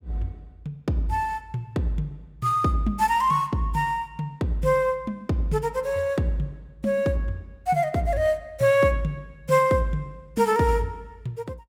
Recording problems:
none

